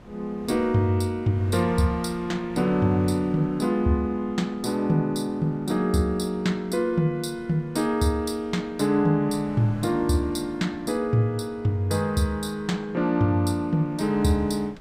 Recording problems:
wind on the microphone; below 640 Hz, SNR 22 dB

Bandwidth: 15.5 kHz